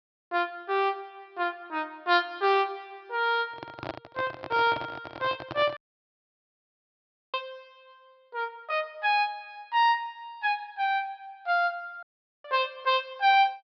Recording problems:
treble missing; nothing above 5.5 kHz
microphone handling noise; from 3.5 to 6 s; peak -3 dB vs average level
audio cutting out; at 6 s for 1.5 s and at 12 s

